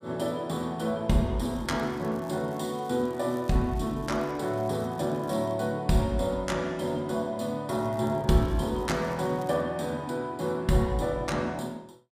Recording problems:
crackle; from 1.5 to 5.5 s and from 7.5 to 9.5 s; loose cable, SNR 27 dB

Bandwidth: 15 kHz